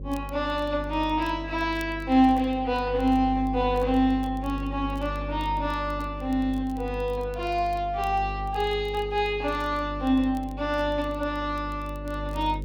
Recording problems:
electrical hum; 50 Hz, harmonics up to 550 Hz, SNR 10 dB
crackling; vinyl, SNR 30 dB

